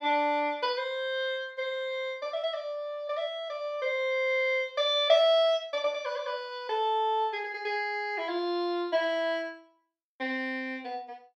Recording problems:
none

